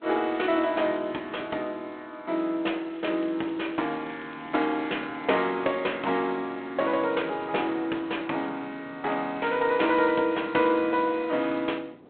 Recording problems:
telephone audio; 240 Hz to 3.6 kHz, G.726
wind noise; below 530 Hz, SNR 22 dB
crackling; from 3 to 5 s and at 7 s; loose cable, SNR 27 dB

